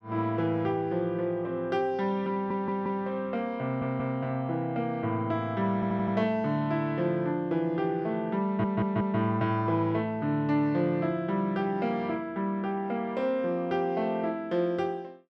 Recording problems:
stutter; 4 times, first at 2.5 s

